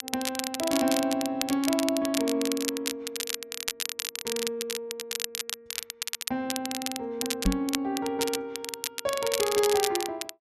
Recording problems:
crackling; vinyl, SNR 3 dB
microphone bump; at 7.5 s; peak +6 dB vs average level

